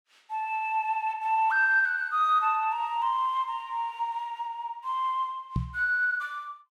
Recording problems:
knock on the microphone; at 5.5 s; peak +2 dB vs average level

